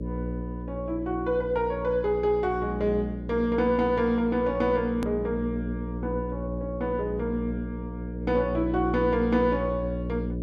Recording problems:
electrical hum; 60 Hz, harmonics up to 600 Hz, SNR 7 dB
hard cut with a click; at 5 s

